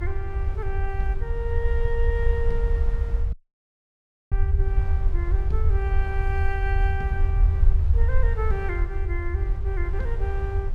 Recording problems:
rumble; below 76 Hz, SNR -7 dB
wind on the microphone; below 550 Hz, SNR 11 dB
audio cutting out; at 3.5 s for 1 s

